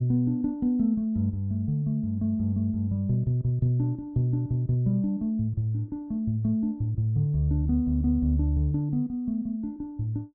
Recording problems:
none

